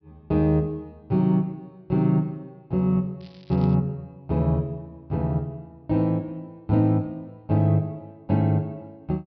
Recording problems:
treble cut off; nothing above 5.5 kHz
crackle; at 3 s; loose cable, SNR 29 dB

